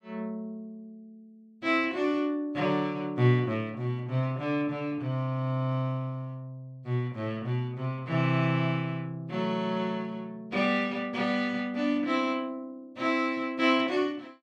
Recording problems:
none

